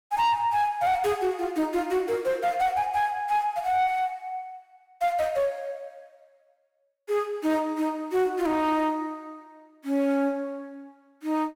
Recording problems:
distorted audio; soft clipping, signal-to-distortion ratio 11 dB

